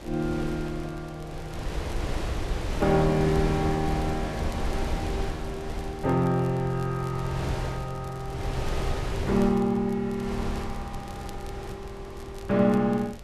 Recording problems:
wind noise; below 420 Hz, SNR 6 dB
crackling; vinyl, SNR 26 dB

